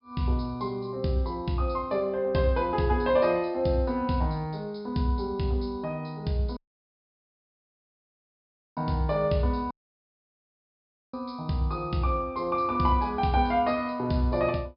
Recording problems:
low-pass filter; nothing above 5.5 kHz
audio cutting out; at 6.5 s for 2 s and at 9.5 s for 1.5 s

